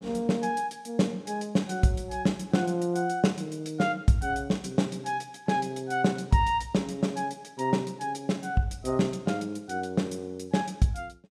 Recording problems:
none

